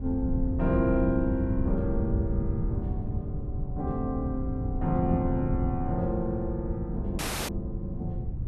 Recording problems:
wind noise; below 120 Hz, SNR 1 dB
dropout; at 7 s

